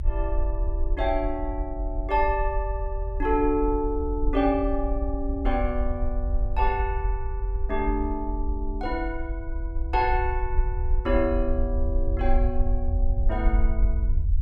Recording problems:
rumble; below 56 Hz, SNR 1 dB

